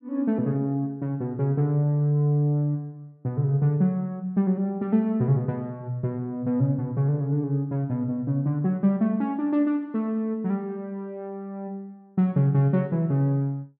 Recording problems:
none

